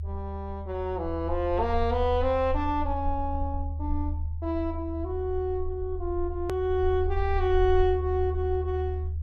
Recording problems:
low-frequency rumble; below 78 Hz, SNR 5 dB
hard cut with a click; at 6.5 s

